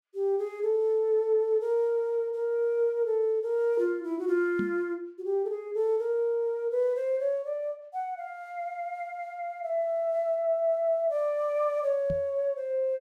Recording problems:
microphone bump; at 4.5 s and at 12 s; peak -1 dB vs average level

